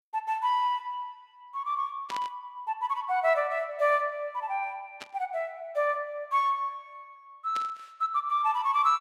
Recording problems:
static burst; at 2 s, at 5 s and at 7.5 s; peak -6 dB vs average level

